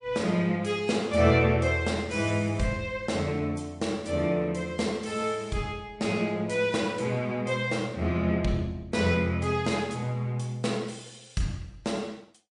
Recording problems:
lossy codec; MP3, log-spectral distance 3 dB

